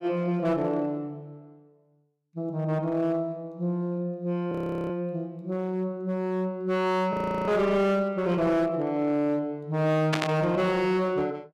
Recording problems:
distorted audio; hard clipping, uneven, signal-to-distortion ratio 11 dB
frozen audio; at 4.5 s and at 7 s
static burst; at 10 s; peak +4 dB vs average level

